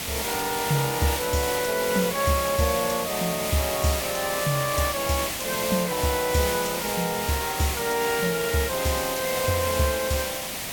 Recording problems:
hiss; SNR 3 dB

